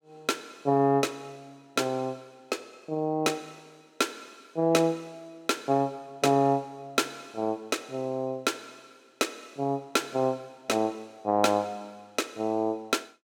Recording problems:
none

